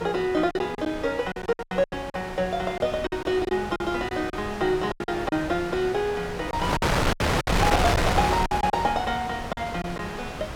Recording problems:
wind on the microphone; below 1.8 kHz, SNR 2 dB
packet loss; 11% of the sound replaced, filled with silence

